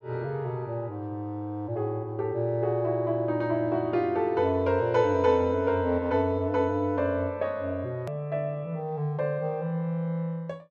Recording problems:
click at an edit; at 8 s

